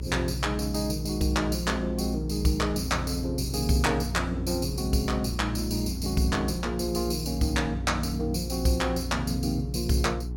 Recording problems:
electrical hum; 60 Hz, harmonics up to 420 Hz, SNR 7 dB
wind noise; below 270 Hz, SNR 19 dB

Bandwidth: 18 kHz